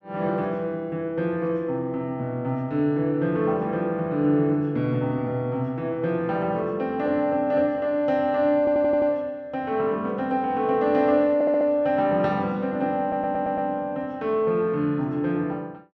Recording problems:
stutter; at 8.5 s, at 11 s and at 13 s

